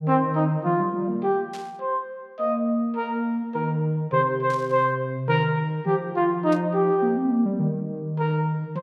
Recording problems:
static burst; at 1.5 s, at 4.5 s and at 6.5 s; peak -13 dB vs average level

